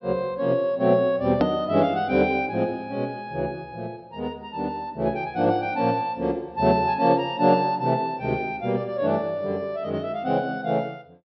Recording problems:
treble missing; nothing above 5.6 kHz
edit click; at 1.5 s

